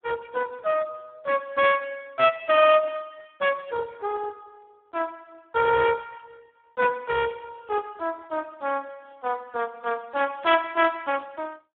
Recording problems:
telephone audio; 300 Hz to 3.4 kHz, Speex

